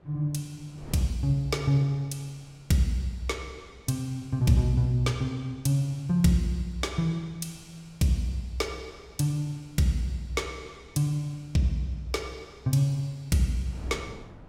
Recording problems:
wind noise; below 380 Hz, SNR 24 dB

